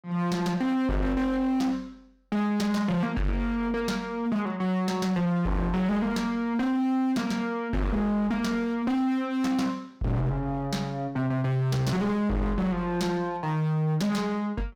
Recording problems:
distorted audio; hard clipping, signal-to-distortion ratio 7 dB

